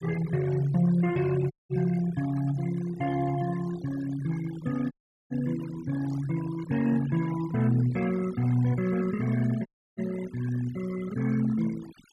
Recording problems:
denoising artefacts; signal-to-artefact ratio 17 dB
dropout; at 1.5 s, at 5 s and at 9.5 s
burst of static; at 6 s; peak -28 dB vs average level

